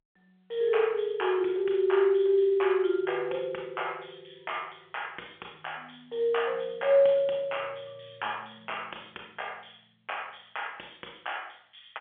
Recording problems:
phone line; 300 Hz to 3.3 kHz, G.711

